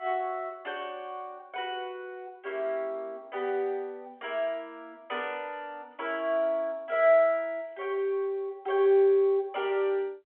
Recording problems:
telephone audio; 280 Hz to 3.6 kHz, G.711

